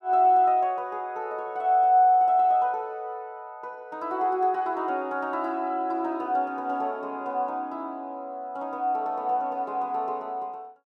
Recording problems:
none

